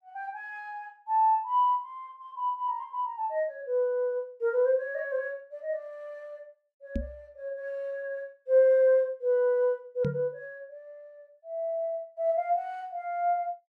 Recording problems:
microphone bump; at 7 s and at 10 s; peak 0 dB vs average level

